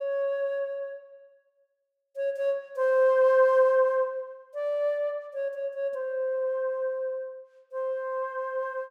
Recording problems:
none

